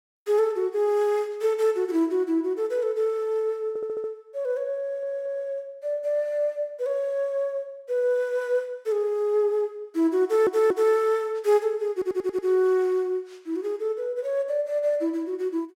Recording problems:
audio stuttering; 4 times, first at 3.5 s

